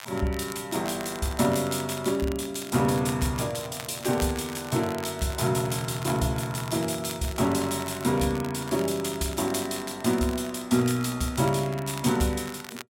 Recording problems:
crackling; vinyl, SNR 15 dB

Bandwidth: 16 kHz